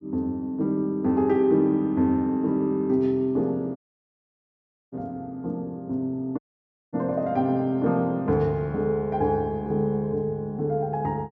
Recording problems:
treble cut off; nothing above 7.8 kHz
audio cutting out; at 4 s for 1 s and at 6.5 s for 0.5 s

